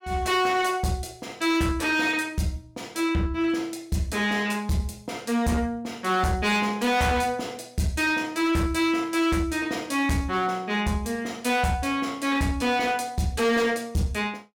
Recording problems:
distorted audio; hard clipping, signal-to-distortion ratio 11 dB

